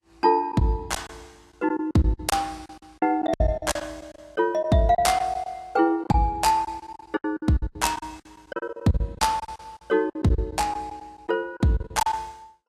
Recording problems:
lossy codec; Vorbis, log-spectral distance 2 dB, nothing above 13.8 kHz
packet loss; 15% of the sound replaced, filled with silence

